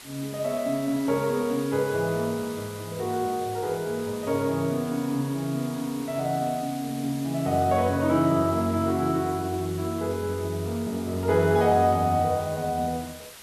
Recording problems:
background hiss; slope 0 dB per octave, SNR 17 dB

